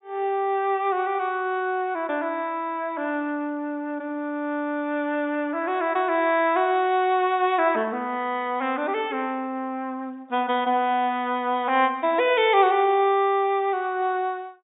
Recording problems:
treble cut off; nothing above 4 kHz

